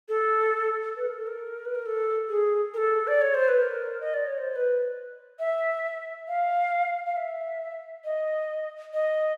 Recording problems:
none

